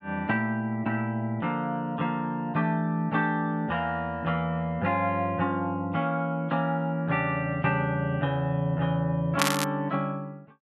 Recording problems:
crackle; at 9.5 s; loose cable, SNR 2 dB

